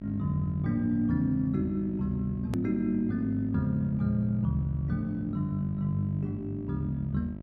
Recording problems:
hum; 50 Hz, harmonics up to 700 Hz, SNR 13 dB
hard cut with a click; at 2.5 s

